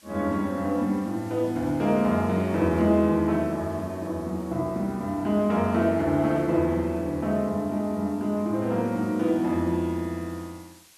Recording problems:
background hiss; slope +1 dB per octave, SNR 27 dB

